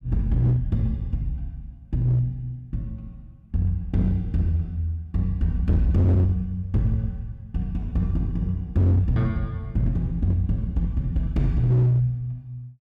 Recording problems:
distorted audio; hard clipping, signal-to-distortion ratio 7 dB

